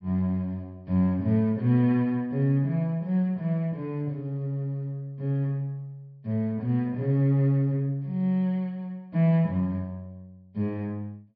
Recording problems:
low-pass filter; nothing above 5.5 kHz

